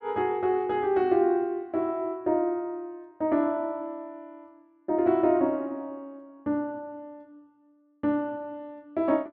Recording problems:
none

